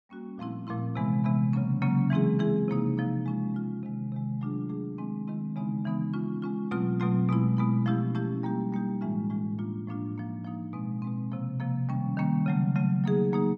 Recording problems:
none

